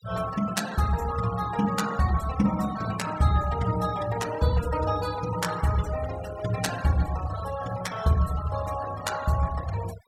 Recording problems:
denoising artefacts; signal-to-artefact ratio 15 dB

